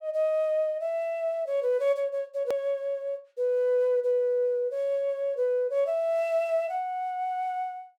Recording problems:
edit click; at 2.5 s

